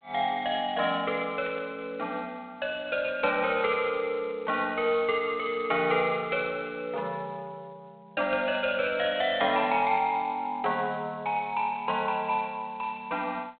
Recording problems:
phone line; 300 Hz to 3.5 kHz, G.726
burst of static; at 1.5 s; peak -15 dB vs average level

